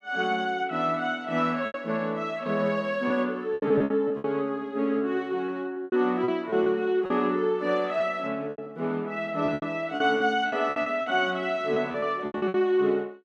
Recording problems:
packet loss; 10% of the sound replaced, filled with repeated pitch periods

